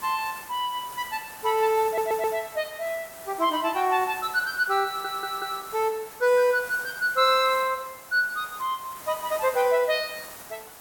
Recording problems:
hiss; SNR 15 dB
stutter; at 2 s and at 5 s

